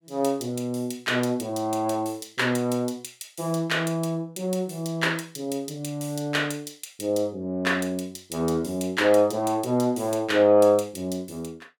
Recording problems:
none

